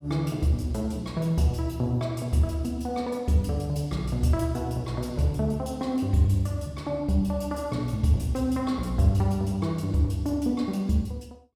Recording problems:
none

